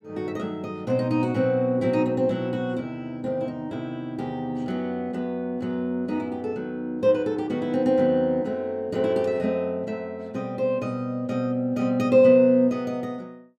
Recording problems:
none

